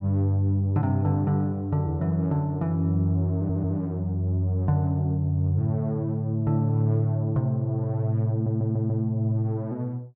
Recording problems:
stutter; at 3.5 s and at 8.5 s

